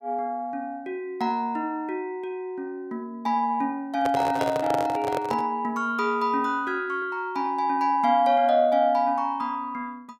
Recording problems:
microphone handling noise; from 4 to 5.5 s; peak +1 dB vs average level

